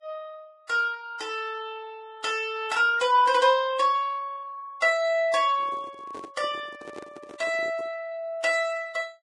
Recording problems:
lossy compression; Vorbis, log-spectral distance 2 dB, nothing above 10.4 kHz
handling noise; from 5.5 to 8 s; peak -12 dB vs average level

